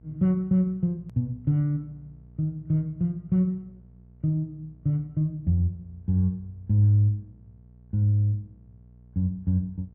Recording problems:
electrical hum; 60 Hz, harmonics up to 480 Hz, SNR 26 dB
edit click; at 1 s

